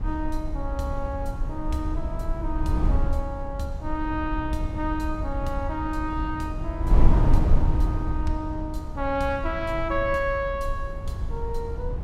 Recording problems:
wind on the microphone; below 76 Hz, SNR -1 dB

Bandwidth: 16 kHz